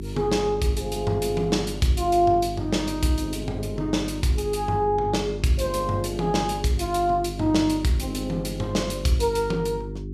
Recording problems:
electrical hum; 50 Hz, harmonics up to 400 Hz, SNR 9 dB

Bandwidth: 14.5 kHz